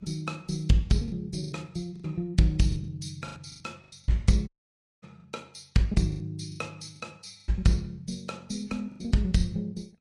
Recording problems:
lossy codec; AAC, then Vorbis, log-spectral distance 3 dB, nothing above 10.7 kHz
lost packets; 10% of the sound replaced, filled with the last packet
dropout; at 4.5 s for 0.5 s

